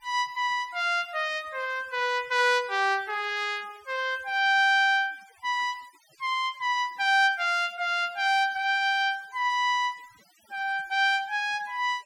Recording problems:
denoising artefacts; signal-to-artefact ratio 27 dB

